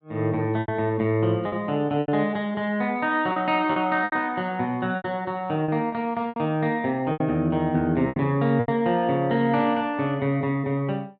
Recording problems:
lost packets; 8% of the sound replaced, filled with repeated pitch periods

